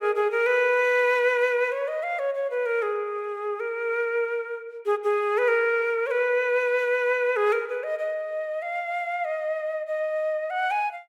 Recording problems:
none

